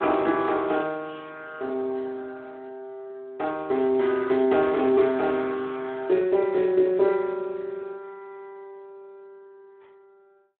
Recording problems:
telephone audio; 220 Hz to 3.8 kHz, Speex

